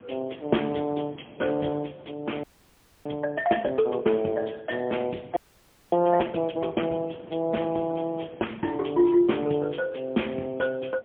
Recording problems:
phone line; 170 Hz to 3.2 kHz, AMR-NB, then MP3
wind on the microphone; below 690 Hz, SNR 23 dB
frozen audio; at 2.5 s for 0.5 s and at 5.5 s for 0.5 s

